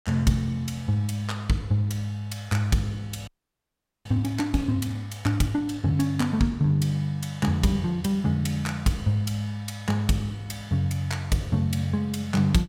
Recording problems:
frozen audio; at 3.5 s for 1 s

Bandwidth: 16 kHz